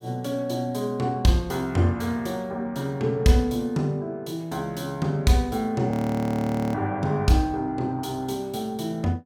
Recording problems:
audio freezing; at 6 s for 1 s

